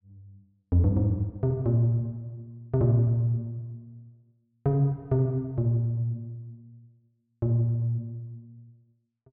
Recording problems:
treble missing; nothing above 5.5 kHz

